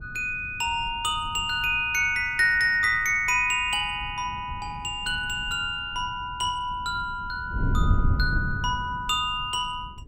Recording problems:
wind noise; below 120 Hz, SNR 9 dB

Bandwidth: 16 kHz